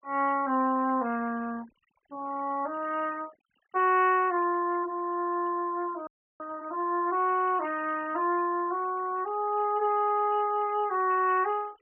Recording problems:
treble missing; nothing above 3.1 kHz
noise reduction artefacts; signal-to-artefact ratio 25 dB
frozen audio; at 6 s

